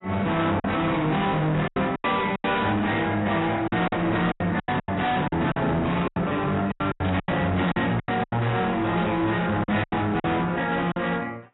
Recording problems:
lossy codec; AAC, log-spectral distance 3 dB, nothing above 3.9 kHz
distortion; hard clipping, signal-to-distortion ratio 6 dB
lost packets; 12% of the sound replaced, filled with silence
burst of static; at 5 s, at 7 s and at 9 s; peak -9 dB vs average level

